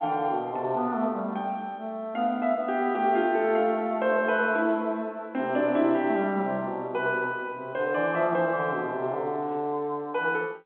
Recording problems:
phone line; 190 Hz to 3.6 kHz, G.711

